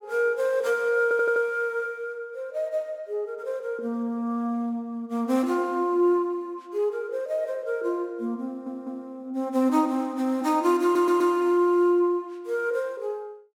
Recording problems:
audio stuttering; at 1 s, at 8.5 s and at 11 s

